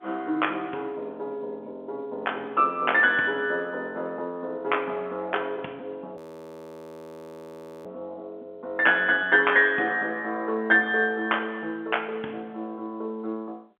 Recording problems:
phone line; 280 Hz to 3.4 kHz, G.711
frozen audio; at 6 s for 1.5 s

